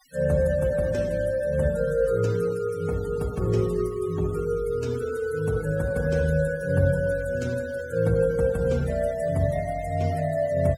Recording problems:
noise reduction artefacts; signal-to-artefact ratio 22 dB

